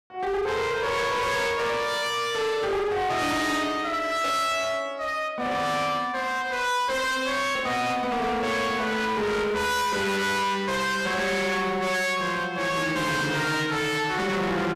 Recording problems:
distorted audio; hard clipping, signal-to-distortion ratio 6 dB

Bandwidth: 14.5 kHz